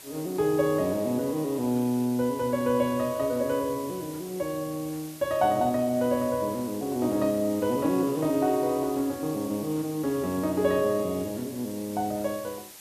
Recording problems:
hiss; slope 0 dB per octave, SNR 17 dB

